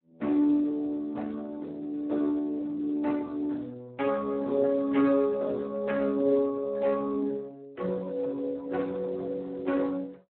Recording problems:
telephone audio; 220 Hz to 3.3 kHz, Speex

